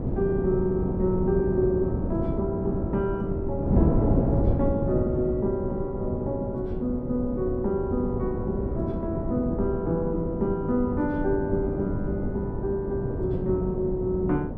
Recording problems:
wind on the microphone; below 300 Hz, SNR 1 dB

